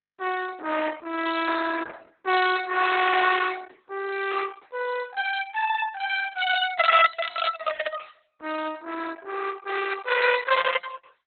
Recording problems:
lossy compression; Opus, log-spectral distance 6 dB, nothing above 4 kHz

